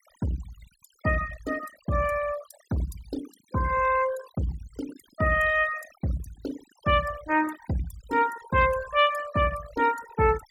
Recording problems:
noise reduction artefacts; signal-to-artefact ratio 15 dB

